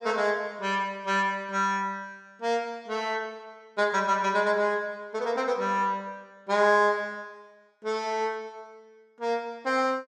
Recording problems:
none

